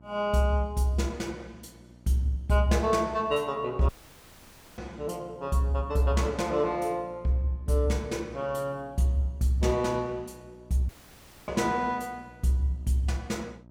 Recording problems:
hum; 60 Hz, harmonics up to 960 Hz, SNR 24 dB
dropout; at 4 s for 1 s and at 11 s for 0.5 s

